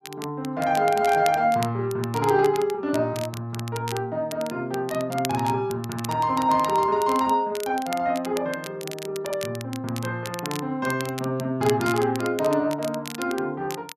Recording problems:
crackling; vinyl, SNR 14 dB

